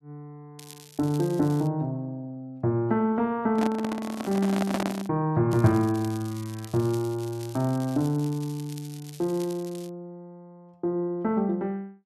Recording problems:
crackle; from 0.5 to 1.5 s, from 4 to 5 s and from 5.5 to 10 s; loose cable, SNR 19 dB
microphone handling noise; from 3.5 to 5 s; peak +2 dB vs average level

